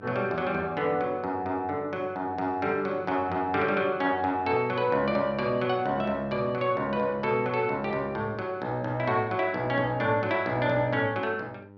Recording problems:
hum; 50 Hz, harmonics up to 1.4 kHz, SNR 23 dB

